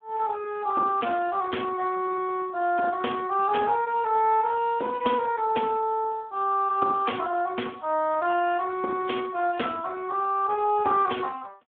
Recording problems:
telephone audio; 280 Hz to 3.3 kHz, Speex

